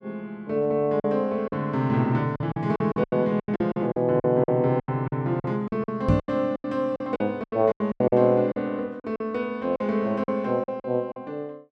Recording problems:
packet loss; 14% of the sound replaced, filled with silence
microphone bump; at 6 s; peak +7 dB vs average level

